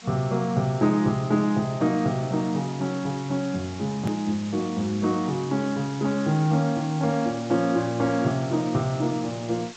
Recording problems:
codec artefacts; G.722, log-spectral distance 6 dB, nothing above 13.1 kHz
hiss; slope 0 dB per octave, SNR 17 dB
hard cut with a click; at 4 s

